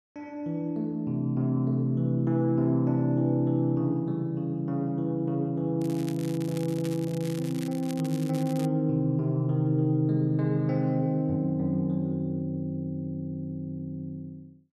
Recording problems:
crackle; from 6 to 8.5 s; loose cable, SNR 18 dB

